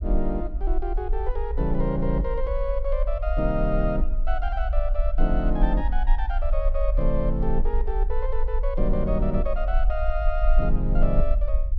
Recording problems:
low-frequency rumble; below 44 Hz, strongest tone 22 Hz, SNR -1 dB

